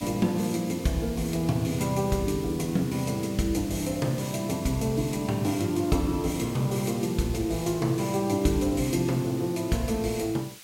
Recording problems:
background hiss; slope +3 dB per octave, SNR 17 dB

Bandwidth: 16 kHz